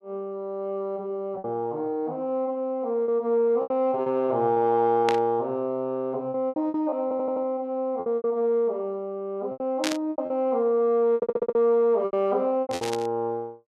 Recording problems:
packet loss; 9% of the sound replaced, filled with repeated pitch periods
burst of static; at 5 s, at 10 s and at 13 s; peak +1 dB vs average level
stutter; at 7 s and at 11 s

